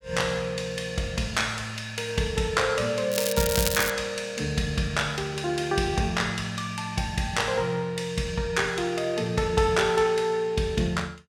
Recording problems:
crackling; at 3 s; loose cable, SNR 2 dB

